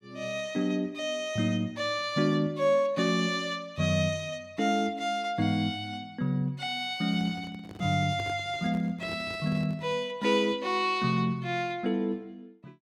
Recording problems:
handling noise; from 7 to 10 s; peak -7 dB vs average level

